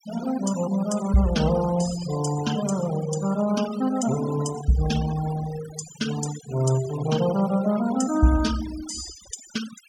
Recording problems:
noise reduction artefacts; signal-to-artefact ratio 13 dB

